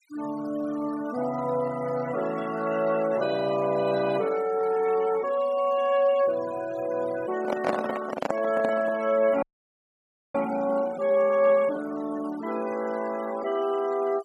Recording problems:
noise reduction artefacts; signal-to-artefact ratio 17 dB
microphone handling noise; from 7.5 to 9 s; peak +3 dB vs average level
frozen audio; at 9.5 s for 1 s

